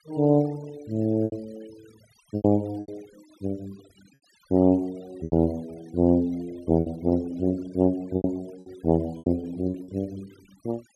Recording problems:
noise reduction artefacts; signal-to-artefact ratio 27 dB
lost packets; 8% of the sound replaced, filled with repeated pitch periods

